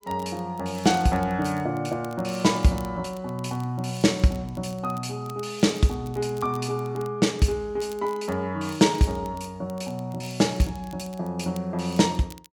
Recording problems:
crackle; vinyl, SNR 25 dB

